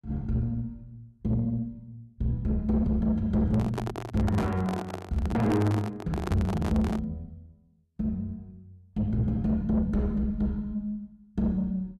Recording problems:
distorted audio; soft clipping, signal-to-distortion ratio 10 dB
microphone handling noise; from 3.5 to 7 s; peak +1 dB vs average level

